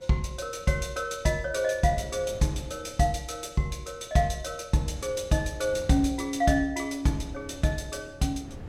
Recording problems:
wind noise; below 330 Hz, SNR 19 dB

